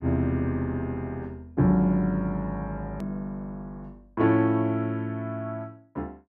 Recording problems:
edit click; at 3 s

